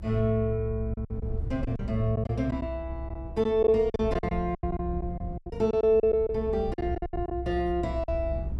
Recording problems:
low-frequency rumble; below 86 Hz, strongest tone 64 Hz, SNR 9 dB
packet loss; 12% of the sound replaced, filled with silence

